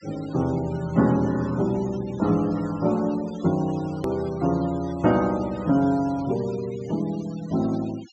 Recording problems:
treble cut off; nothing above 8 kHz
noise reduction artefacts; signal-to-artefact ratio 20 dB
click at an edit; at 4 s

